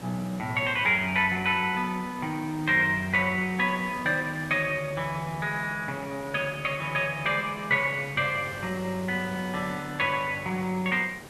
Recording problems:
hiss; slope -5 dB per octave, SNR 17 dB

